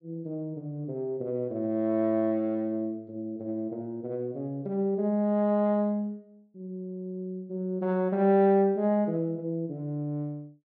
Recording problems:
none

